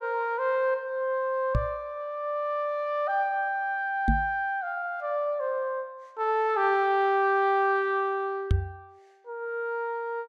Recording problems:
microphone bump; at 1.5 s, at 4 s and at 8.5 s; peak +7 dB vs average level

